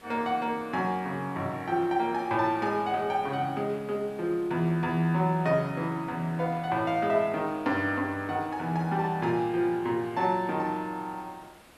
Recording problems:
hiss; SNR 25 dB

